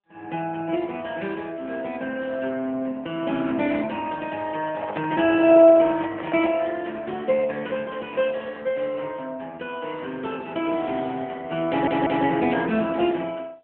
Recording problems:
phone line; 280 Hz to 3.4 kHz, AMR-NB
microphone handling noise; from 4.5 to 6.5 s; peak -7 dB vs average level
stutter; at 12 s

